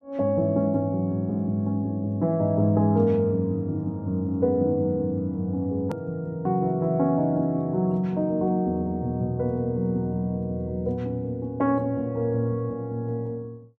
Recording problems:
edit click; at 6 s

